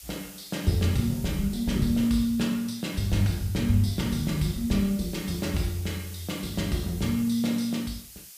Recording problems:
background hiss; slope +4 dB per octave, SNR 16 dB

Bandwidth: 15 kHz